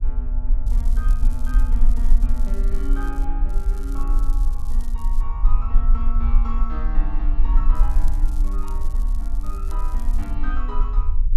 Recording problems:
rumble; below 38 Hz, strongest tone 20 Hz, SNR -12 dB
crackling; from 0.5 to 3.5 s, from 3.5 to 5 s and from 8 to 10 s; loose cable, SNR 14 dB

